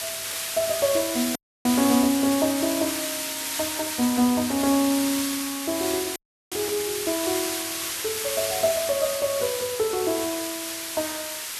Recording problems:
background hiss; slope +2 dB per octave, SNR 3 dB
dropout; at 1.5 s and at 6 s

